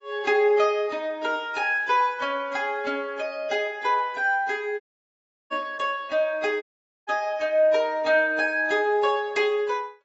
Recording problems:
lossy compression; AAC, log-spectral distance 2 dB, nothing above 7.6 kHz
audio cutting out; at 5 s for 0.5 s and at 6.5 s

